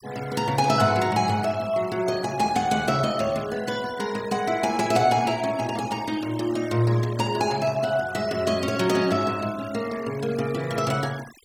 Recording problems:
noise reduction artefacts; signal-to-artefact ratio 17 dB

